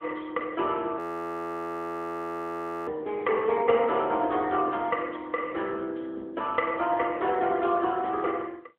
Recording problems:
telephone audio; 280 Hz to 3.3 kHz, AMR-NB
audio freezing; at 1 s for 2 s

